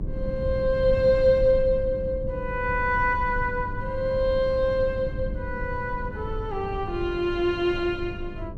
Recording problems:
hum; 50 Hz, harmonics up to 1.2 kHz, SNR 18 dB
low-frequency rumble; below 100 Hz, SNR 10 dB

